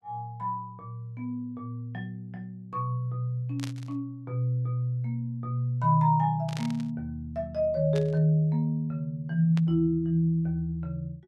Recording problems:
burst of static; 4 times, first at 3.5 s; peak -6 dB vs average level

